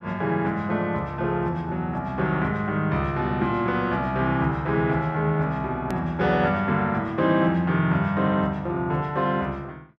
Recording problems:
edit click; at 6 s

